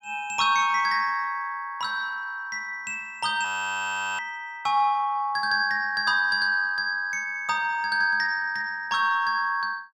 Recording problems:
frozen audio; at 3.5 s for 0.5 s

